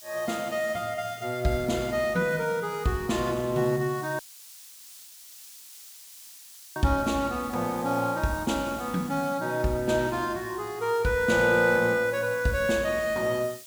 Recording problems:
hiss; slope +5 dB per octave, SNR 18 dB
audio cutting out; at 4 s for 2.5 s

